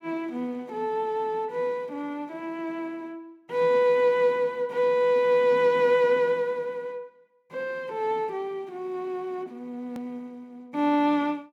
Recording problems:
click at an edit; at 10 s

